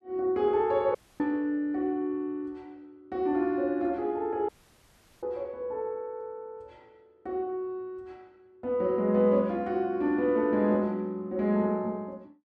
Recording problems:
dropout; at 1 s and at 4.5 s for 0.5 s

